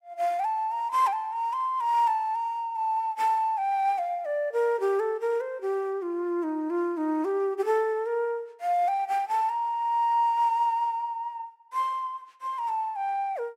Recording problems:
none

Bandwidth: 16 kHz